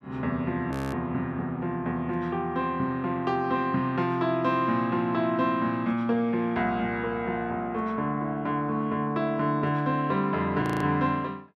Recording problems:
audio freezing; at 0.5 s and at 11 s

